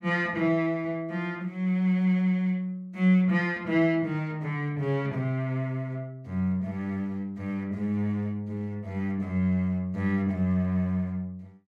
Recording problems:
none

